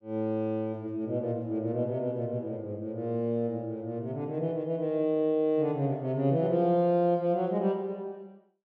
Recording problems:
none

